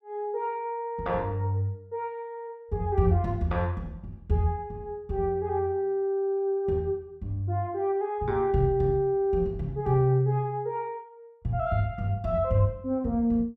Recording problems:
none

